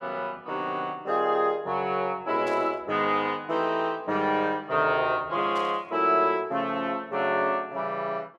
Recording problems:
static burst; at 2.5 s and at 5.5 s; peak -13 dB vs average level

